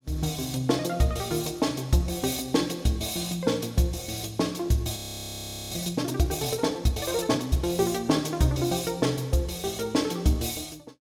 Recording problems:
frozen audio; at 5 s for 1 s

